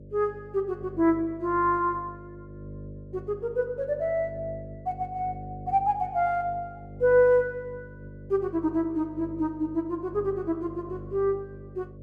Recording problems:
electrical hum; 50 Hz, harmonics up to 600 Hz, SNR 16 dB

